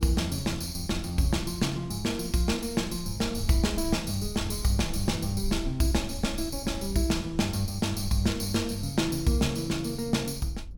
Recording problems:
low-frequency rumble; below 78 Hz, SNR 12 dB

